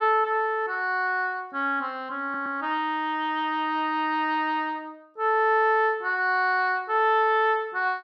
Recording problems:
audio stuttering; at 2 s

